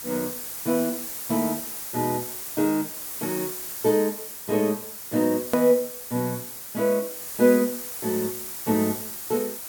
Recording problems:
hiss; slope -1 dB per octave, SNR 6 dB
edit click; at 5.5 s

